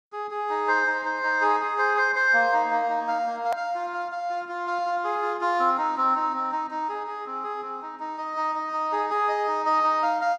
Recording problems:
hard cut with a click; at 3.5 s

